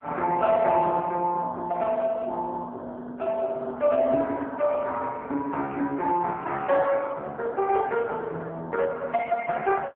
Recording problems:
phone line; 260 Hz to 3.3 kHz, AMR-NB

